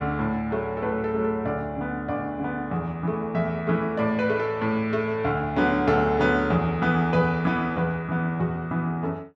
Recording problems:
none

